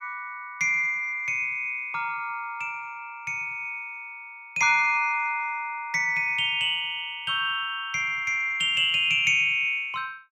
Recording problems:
none

